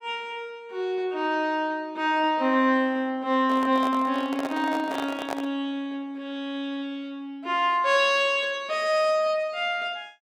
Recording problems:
handling noise; from 3.5 to 5.5 s; peak -2 dB vs average level

